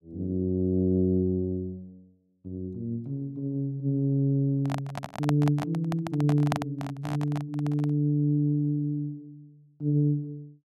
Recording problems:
microphone handling noise; from 4.5 to 8 s; peak +3 dB vs average level

